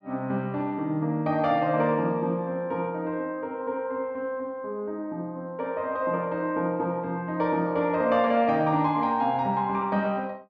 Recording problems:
none

